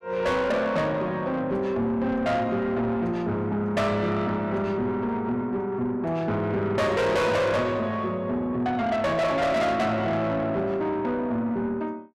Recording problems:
distorted audio; soft clipping, signal-to-distortion ratio 7 dB

